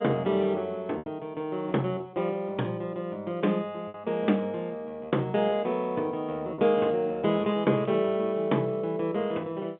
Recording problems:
telephone audio; 220 Hz to 3.7 kHz, G.711
lost packets; 2% of the sound replaced, filled with repeated pitch periods

